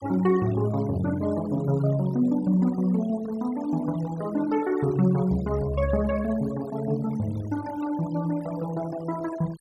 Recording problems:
denoising artefacts; signal-to-artefact ratio 20 dB

